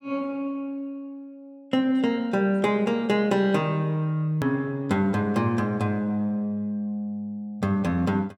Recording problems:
edit click; at 4.5 s

